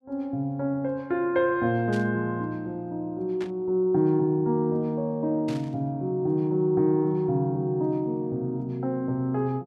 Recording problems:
static burst; at 2 s, at 3.5 s and at 5.5 s; peak -11 dB vs average level

